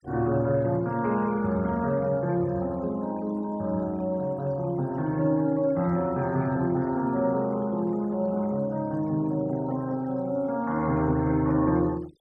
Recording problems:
noise reduction artefacts; signal-to-artefact ratio 25 dB

